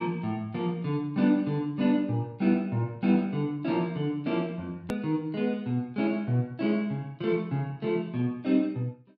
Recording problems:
edit click; at 5 s

